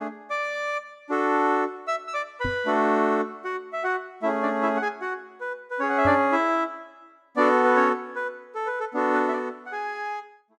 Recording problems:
microphone bump; at 2.5 s and at 6 s; peak -3 dB vs average level

